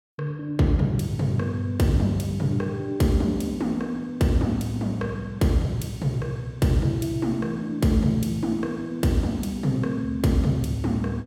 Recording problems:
none

